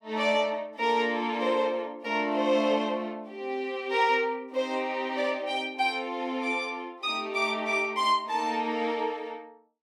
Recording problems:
none

